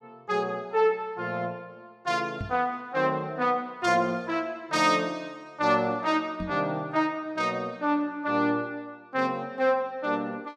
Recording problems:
microphone thump; at 2.5 s and at 6.5 s; peak -3 dB vs average level

